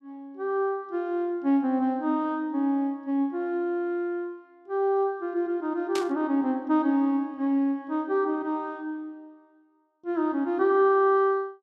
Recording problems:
burst of static; at 6 s; peak -4 dB vs average level

